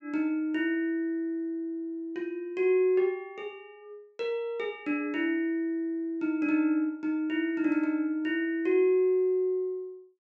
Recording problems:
treble cut off; nothing above 8 kHz

